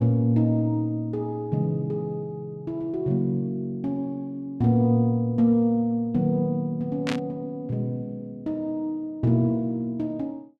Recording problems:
static burst; at 7 s; peak -1 dB vs average level

